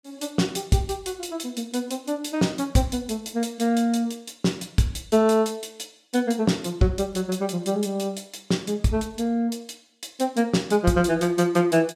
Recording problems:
none

